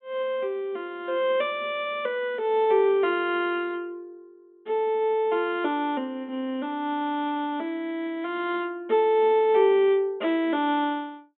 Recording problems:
low-pass filter; nothing above 3.7 kHz

